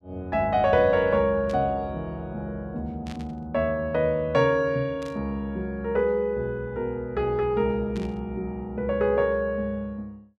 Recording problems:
burst of static; 4 times, first at 1.5 s; peak -13 dB vs average level

